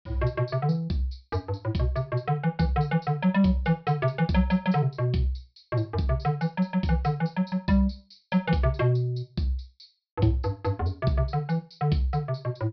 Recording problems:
treble cut off; nothing above 5.5 kHz

